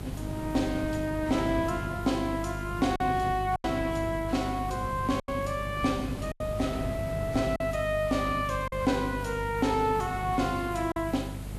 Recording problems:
lossy codec; Vorbis, log-spectral distance 4 dB, nothing above 12.7 kHz
hum; 50 Hz, harmonics up to 850 Hz, SNR 8 dB
hiss; slope -2 dB per octave, SNR 22 dB
wind on the microphone; below 320 Hz, SNR 11 dB
lost packets; 4% of the sound replaced, filled with silence

